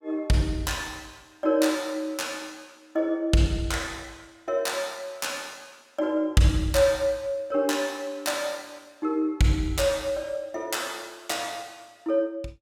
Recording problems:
none

